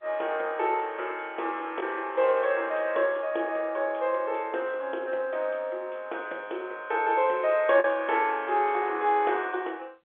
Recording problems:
telephone audio; 300 Hz to 3.6 kHz, G.711
lost packets; 0.6% of the sound replaced, filled with the last packet

